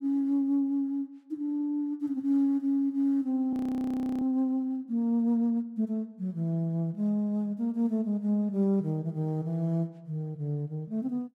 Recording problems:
audio freezing; at 3.5 s for 0.5 s

